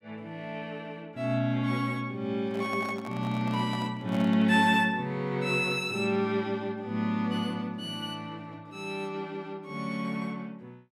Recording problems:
microphone handling noise; from 2.5 to 4.5 s; peak -8 dB vs average level

